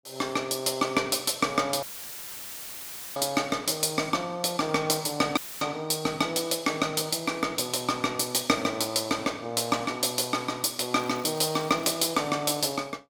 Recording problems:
audio cutting out; at 2 s for 1.5 s and at 5.5 s; filled with static
crackling; at 11 s; loose cable, SNR 24 dB

